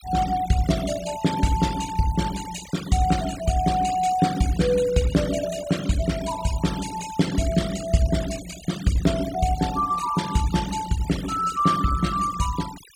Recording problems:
noise reduction artefacts; signal-to-artefact ratio 14 dB

